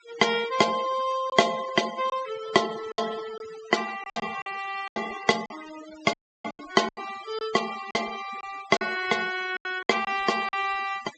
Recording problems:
treble cut off; nothing above 8 kHz
denoising artefacts; signal-to-artefact ratio 13 dB
packet loss; 8% of the sound replaced, filled with silence
audio cutting out; at 6 s

